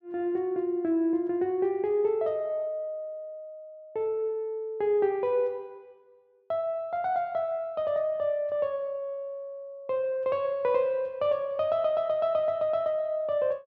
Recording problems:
none

